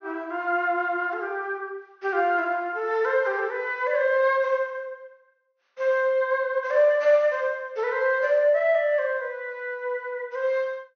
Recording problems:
low-pass filter; nothing above 6.4 kHz

